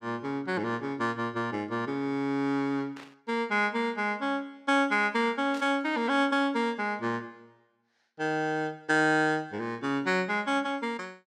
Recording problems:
burst of static; at 3 s and at 5.5 s; peak -12 dB vs average level

